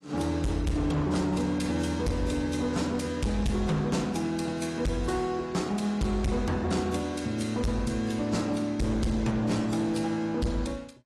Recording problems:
lossy codec; AAC, log-spectral distance 3 dB, nothing above 11.3 kHz
distortion; hard clipping, signal-to-distortion ratio 8 dB

